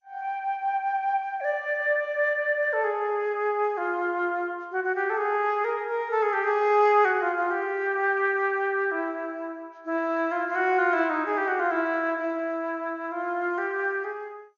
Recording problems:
lossy codec; MP2, log-spectral distance 2 dB, nothing above 6.7 kHz

